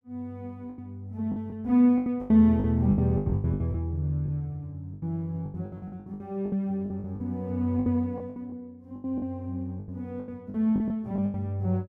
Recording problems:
packet loss; 16% of the sound replaced, filled with the last packet

